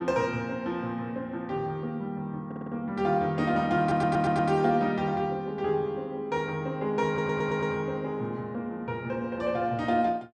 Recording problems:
stutter; at 2.5 s, at 4 s and at 7 s

